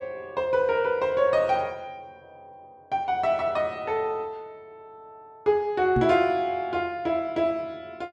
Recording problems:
microphone bump; at 6 s; peak +2 dB vs average level

